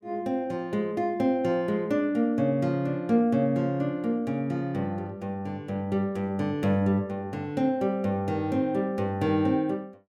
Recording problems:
none

